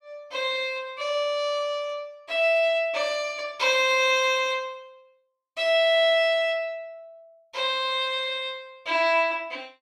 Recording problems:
none

